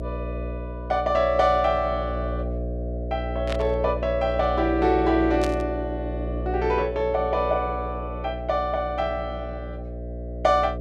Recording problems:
hum; 60 Hz, harmonics up to 660 Hz, SNR 7 dB
static burst; at 3.5 s and at 5.5 s; peak -4 dB vs average level

